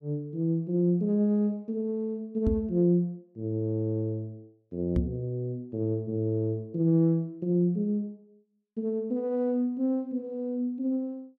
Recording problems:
microphone bump; at 2.5 s and at 5 s; peak +4 dB vs average level

